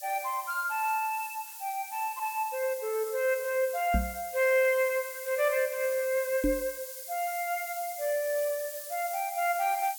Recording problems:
background hiss; SNR 10 dB
microphone thump; at 4 s and at 6.5 s; peak +5 dB vs average level

